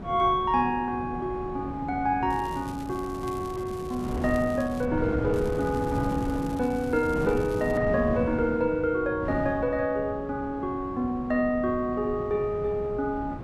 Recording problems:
wind noise; below 360 Hz, SNR 8 dB
crackle; from 2.5 to 5 s and from 5.5 to 8 s; loose cable, SNR 23 dB

